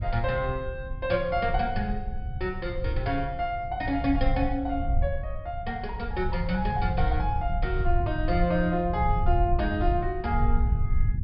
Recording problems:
low-pass filter; nothing above 5.5 kHz
low-frequency rumble; below 82 Hz, SNR 2 dB

